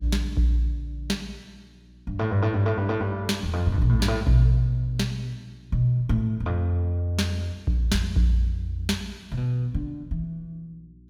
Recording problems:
electrical hum; 60 Hz, harmonics up to 360 Hz, SNR 27 dB

